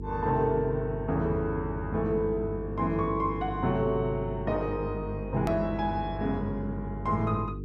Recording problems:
hum; 50 Hz, harmonics up to 450 Hz, SNR 8 dB
hard cut with a click; at 5.5 s

